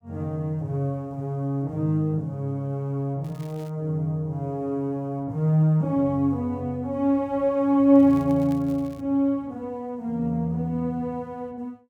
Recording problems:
crackle; at 3 s and from 8 to 9 s; loose cable, SNR 29 dB

